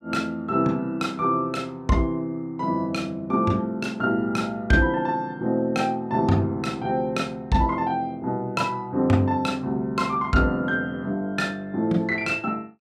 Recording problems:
none

